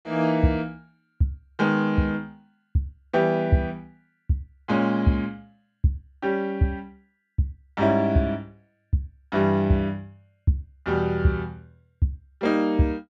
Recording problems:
none

